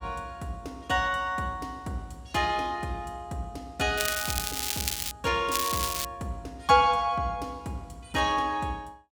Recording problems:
crackling; from 4 to 5 s and at 5.5 s; loose cable, SNR 1 dB

